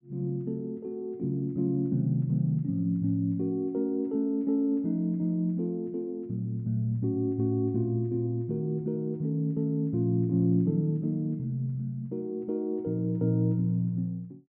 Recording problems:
none

